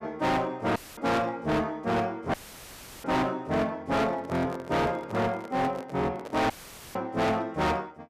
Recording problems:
distortion; hard clipping, signal-to-distortion ratio 6 dB
dropout; at 1 s, at 2.5 s for 0.5 s and at 6.5 s; filled with static
handling noise; from 4 to 6.5 s; peak -7 dB vs average level

